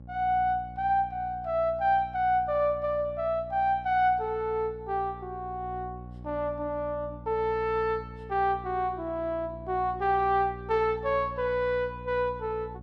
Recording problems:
hum; 60 Hz, harmonics up to 600 Hz, SNR 16 dB

